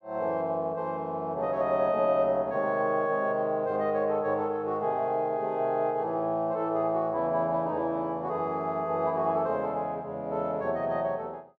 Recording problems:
none

